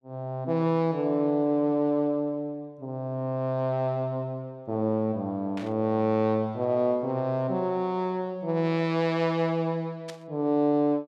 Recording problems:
static burst; at 5.5 s and at 10 s; peak -10 dB vs average level

